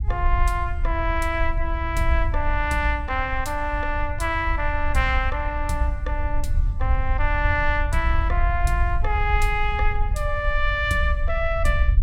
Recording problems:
low-frequency rumble; below 64 Hz, SNR 2 dB

